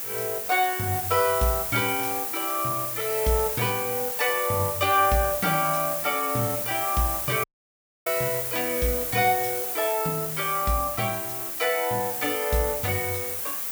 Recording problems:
background hiss; slope -1 dB per octave, SNR 2 dB
dropout; at 7.5 s for 0.5 s

